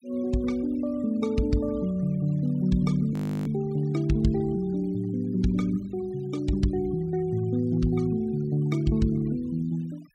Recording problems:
denoising artefacts; signal-to-artefact ratio 27 dB
audio freezing; at 3 s

